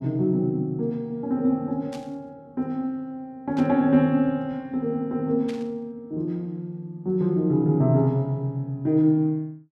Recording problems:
static burst; at 2 s, at 3.5 s and at 5.5 s; peak -12 dB vs average level

